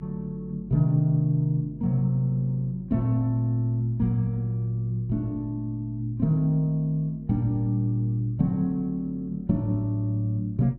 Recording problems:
electrical hum; 50 Hz, harmonics up to 350 Hz, SNR 21 dB

